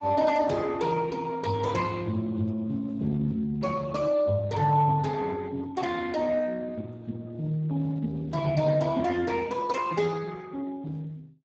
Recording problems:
lossy compression; Speex, log-spectral distance 3 dB

